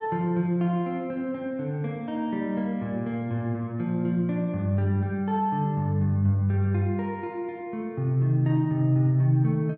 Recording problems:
none

